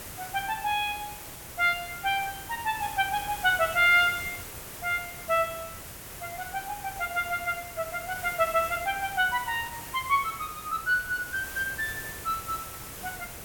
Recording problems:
background hiss; slope -3 dB per octave, SNR 11 dB

